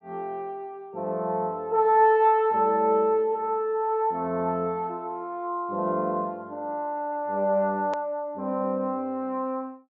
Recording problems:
low-pass filter; nothing above 8 kHz
hard cut with a click; at 8 s

